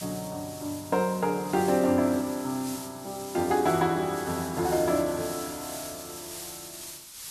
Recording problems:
hiss; slope +3 dB per octave, SNR 12 dB

